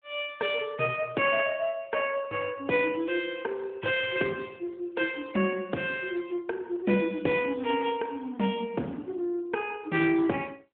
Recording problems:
phone line; 220 Hz to 3.4 kHz, AMR-NB

